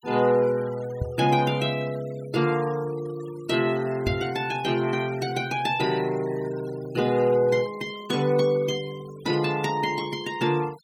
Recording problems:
denoising artefacts; signal-to-artefact ratio 21 dB
microphone bump; at 1 s and at 4 s; peak +1 dB vs average level

